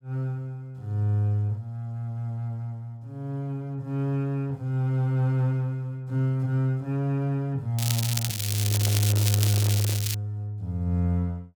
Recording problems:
crackling; from 8 to 10 s; loose cable, SNR 2 dB
handling noise; from 8.5 to 10 s; peak -8 dB vs average level

